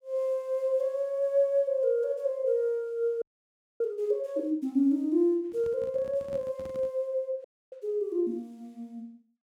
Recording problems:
audio freezing; at 3 s for 0.5 s and at 7.5 s
microphone handling noise; from 5.5 to 7 s; peak -12 dB vs average level

